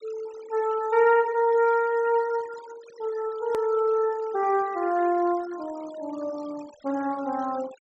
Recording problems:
treble cut off; nothing above 7.9 kHz
denoising artefacts; signal-to-artefact ratio 21 dB
click at an edit; at 3.5 s

